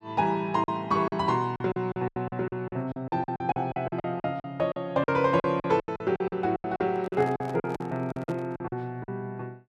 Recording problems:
packet loss; 17% of the sound replaced, filled with silence
handling noise; from 7 to 8.5 s; peak -7 dB vs average level

